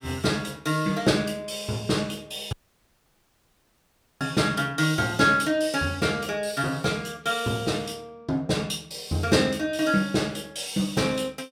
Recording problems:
dropout; at 2.5 s for 1.5 s

